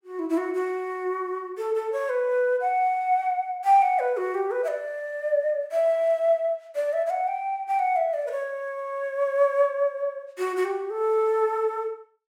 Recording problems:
none

